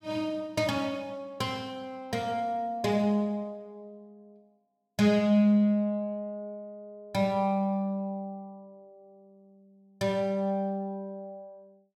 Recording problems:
none

